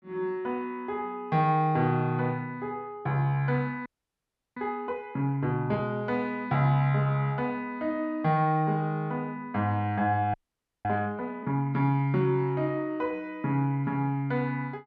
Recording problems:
audio freezing; at 4 s for 0.5 s and at 10 s for 0.5 s

